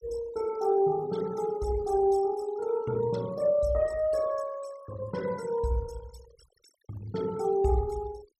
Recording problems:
noise reduction artefacts; signal-to-artefact ratio 20 dB

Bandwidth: 14.5 kHz